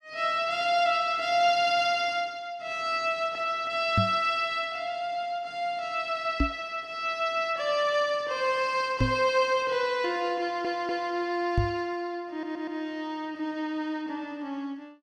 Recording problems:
microphone thump; 4 times, first at 4 s; peak +5 dB vs average level
audio stuttering; at 10 s and at 12 s

